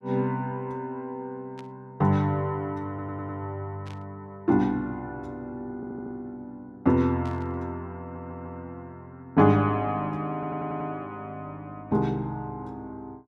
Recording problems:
static burst; at 1.5 s, at 4 s and at 7.5 s; peak -15 dB vs average level
stutter; 4 times, first at 3 s

